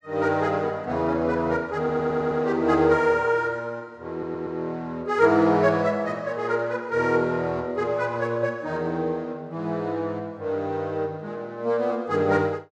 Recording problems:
stutter; at 2 s and at 4 s

